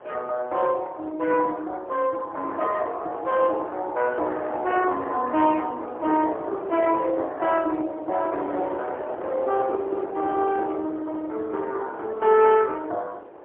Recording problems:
telephone audio; 280 Hz to 3.3 kHz, AMR-NB, then MP3
wind on the microphone; below 810 Hz, SNR 11 dB

